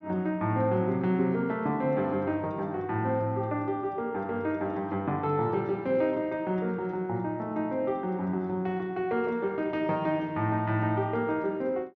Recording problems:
treble missing; nothing above 6.5 kHz

